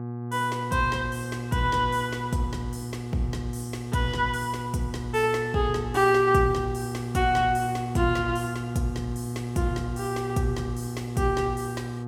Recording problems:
mains hum; 60 Hz, harmonics up to 1.2 kHz, SNR 7 dB

